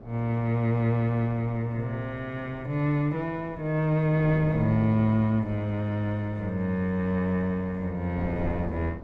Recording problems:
wind noise; below 420 Hz, SNR 15 dB

